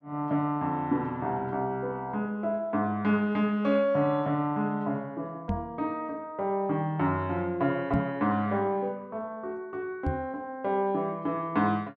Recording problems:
microphone thump; at 5.5 s, at 8 s and at 10 s; peak +3 dB vs average level

